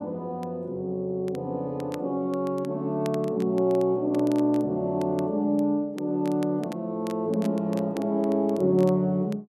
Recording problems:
crackle; vinyl, SNR 24 dB

